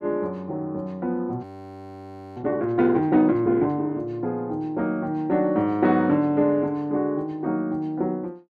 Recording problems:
audio freezing; at 1.5 s for 1 s

